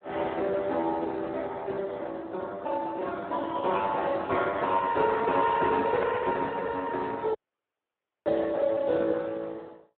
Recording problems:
telephone audio; 280 Hz to 2.6 kHz, Speex
dropout; at 7.5 s for 1 s

